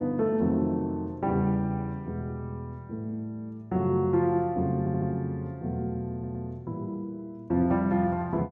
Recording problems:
stutter; at 5 s and at 6 s

